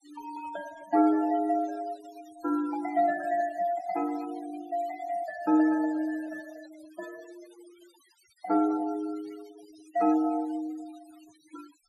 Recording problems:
noise reduction artefacts; signal-to-artefact ratio 21 dB

